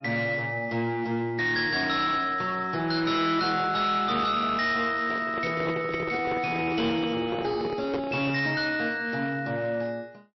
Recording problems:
lossy codec; MP3, log-spectral distance 3 dB, nothing above 5.3 kHz
distortion; hard clipping, uneven, signal-to-distortion ratio 10 dB
handling noise; from 5 to 8.5 s; peak -2 dB vs average level

